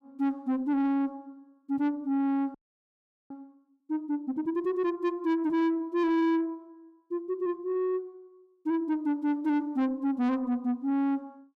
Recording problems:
distortion; soft clipping, signal-to-distortion ratio 11 dB
audio freezing; at 2.5 s for 1 s

